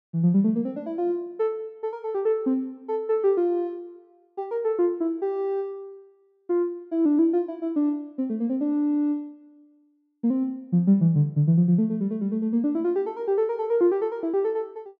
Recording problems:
none

